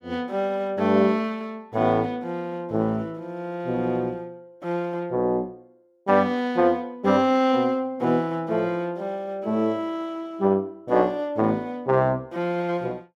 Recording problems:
none

